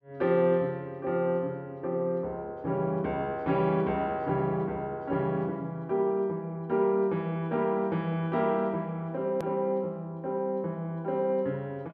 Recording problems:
click at an edit; at 9.5 s

